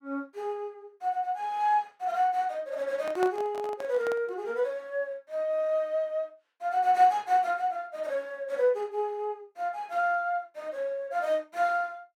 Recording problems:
microphone handling noise; from 3 to 4.5 s; peak -3 dB vs average level

